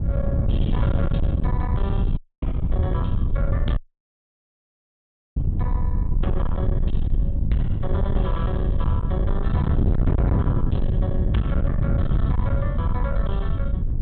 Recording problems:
treble cut off; nothing above 4 kHz
distortion; soft clipping, signal-to-distortion ratio 7 dB
rumble; below 90 Hz, SNR -6 dB
wind on the microphone; below 140 Hz, SNR -7 dB
dropout; at 2 s and at 4 s for 1.5 s

